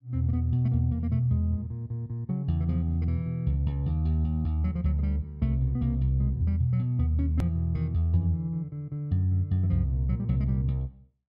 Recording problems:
hard cut with a click; at 7.5 s

